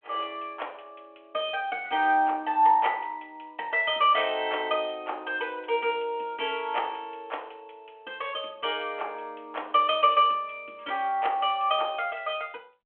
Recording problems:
telephone audio; 280 Hz to 3.3 kHz, G.726

